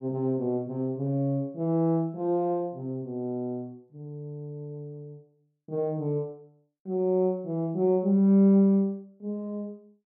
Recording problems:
none

